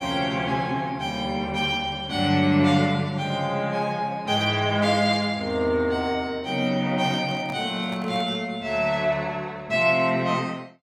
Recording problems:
handling noise; from 7 to 8.5 s; peak -10 dB vs average level

